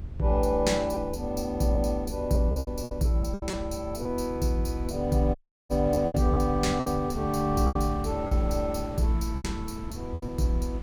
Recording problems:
electrical hum; 50 Hz, harmonics up to 450 Hz, SNR 19 dB
low-frequency rumble; below 100 Hz, SNR 12 dB
wind on the microphone; below 1.1 kHz, SNR 22 dB
packet loss; 8% of the sound replaced, filled with repeated pitch periods
audio cutting out; at 5.5 s

